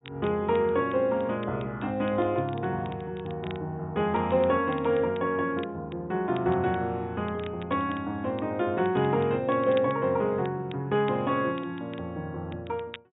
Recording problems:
treble cut off; nothing above 4 kHz
crackle; vinyl, SNR 23 dB

